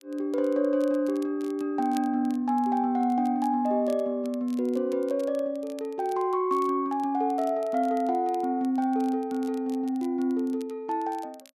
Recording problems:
crackle; vinyl, SNR 27 dB

